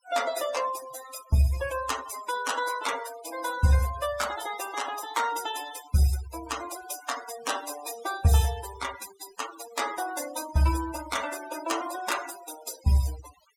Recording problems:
noise reduction artefacts; signal-to-artefact ratio 11 dB

